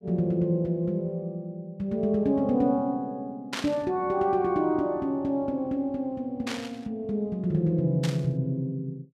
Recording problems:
burst of static; at 3.5 s, at 6.5 s and at 8 s; peak 0 dB vs average level

